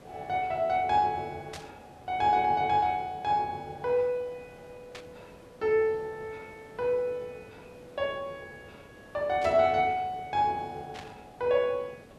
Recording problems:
hiss; SNR 23 dB
static burst; 4 times, first at 1.5 s; peak -9 dB vs average level

